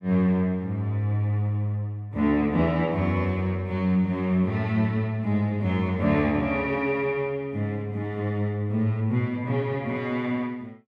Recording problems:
none

